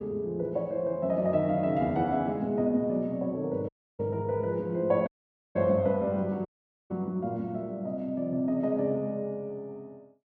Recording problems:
audio cutting out; at 3.5 s, at 5 s and at 6.5 s

